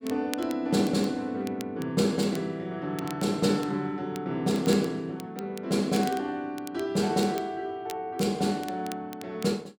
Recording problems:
crackling; vinyl, SNR 18 dB

